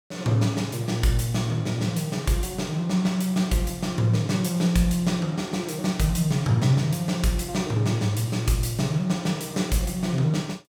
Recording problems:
none

